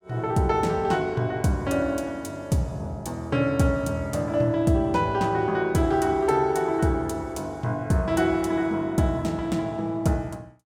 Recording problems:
none

